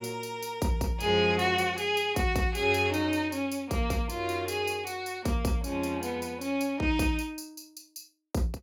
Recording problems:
none

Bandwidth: 18.5 kHz